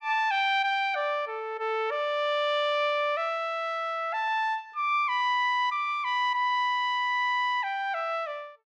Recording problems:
none

